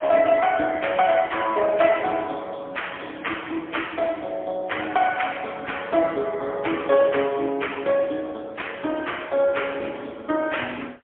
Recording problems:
telephone audio; 240 Hz to 3.4 kHz, AMR-NB, then MP3

